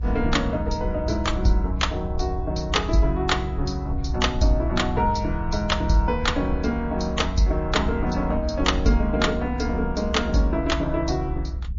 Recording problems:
codec artefacts; MP3, log-spectral distance 2 dB, nothing above 6 kHz
rumble; below 68 Hz, strongest tone 62 Hz, SNR 6 dB

